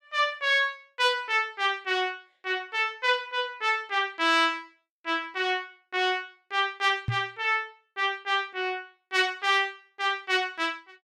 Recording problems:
microphone bump; at 7 s; peak +1 dB vs average level

